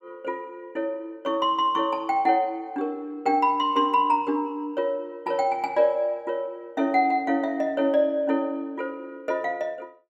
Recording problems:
none

